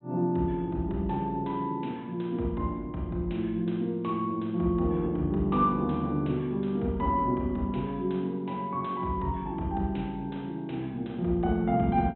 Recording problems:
low-pass filter; nothing above 3.8 kHz

